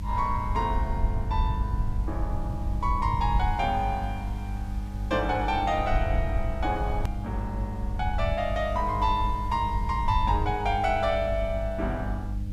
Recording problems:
hum; 50 Hz, harmonics up to 600 Hz, SNR 9 dB
background hiss; SNR 27 dB
low-frequency rumble; below 72 Hz, SNR 3 dB
edit click; at 7 s

